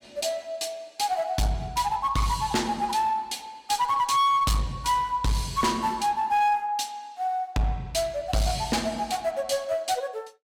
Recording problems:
distorted audio; hard clipping, uneven, signal-to-distortion ratio 12 dB

